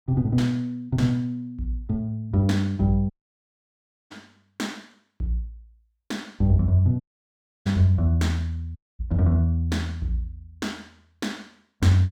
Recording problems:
dropout; at 3 s for 1 s, at 7 s for 0.5 s and at 9 s

